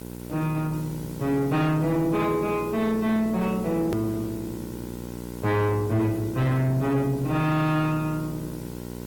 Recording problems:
lossy compression; Opus, log-spectral distance 4 dB, nothing above 17.7 kHz
distortion; soft clipping, signal-to-distortion ratio 12 dB
hum; 60 Hz, harmonics up to 1.6 kHz, SNR 12 dB
hiss; slope +1 dB per octave, SNR 22 dB
edit click; at 4 s

